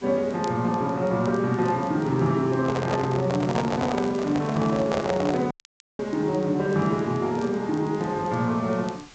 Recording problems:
treble cut off; nothing above 8 kHz
hiss; slope -1 dB per octave, SNR 23 dB
crackle; vinyl, SNR 28 dB
handling noise; from 2.5 to 5.5 s; peak +2 dB vs average level
dropout; at 5.5 s

